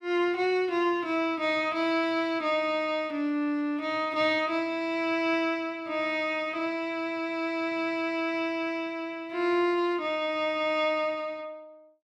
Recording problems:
none

